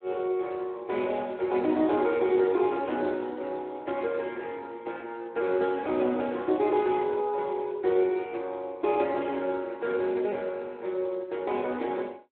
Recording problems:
telephone audio; 280 Hz to 3.7 kHz, Speex

